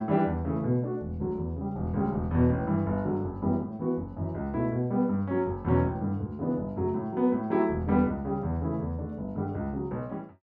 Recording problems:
none

